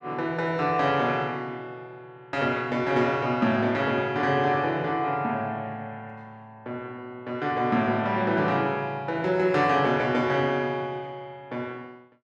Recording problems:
none

